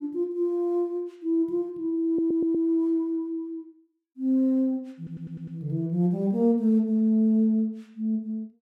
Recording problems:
audio stuttering; at 2 s and at 5 s

